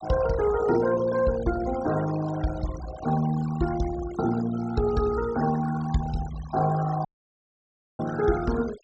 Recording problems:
low-pass filter; nothing above 8 kHz
denoising artefacts; signal-to-artefact ratio 15 dB
audio cutting out; at 7 s for 1 s

